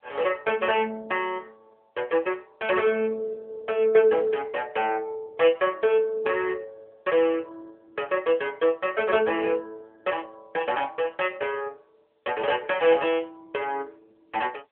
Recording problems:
phone line; 320 Hz to 3.2 kHz, AMR-NB

